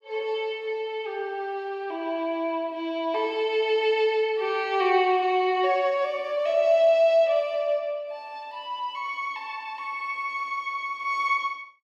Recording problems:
none

